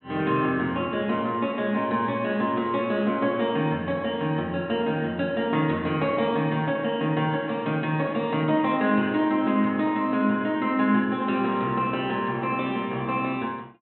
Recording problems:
treble cut off; nothing above 3.8 kHz

